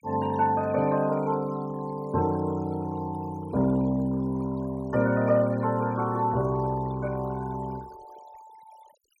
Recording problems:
denoising artefacts; signal-to-artefact ratio 22 dB

